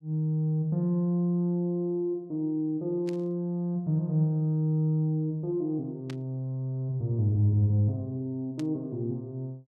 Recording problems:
burst of static; at 3 s, at 6 s and at 8.5 s; peak -11 dB vs average level

